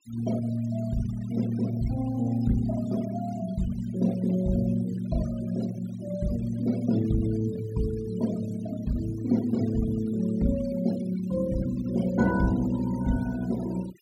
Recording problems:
noise reduction artefacts; signal-to-artefact ratio 17 dB

